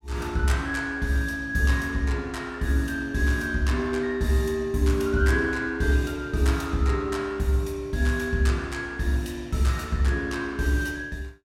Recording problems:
none

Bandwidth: 16.5 kHz